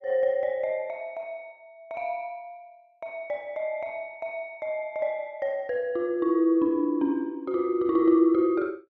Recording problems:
none

